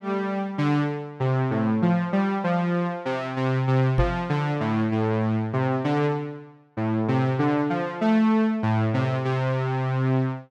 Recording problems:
microphone thump; at 4 s; peak +4 dB vs average level

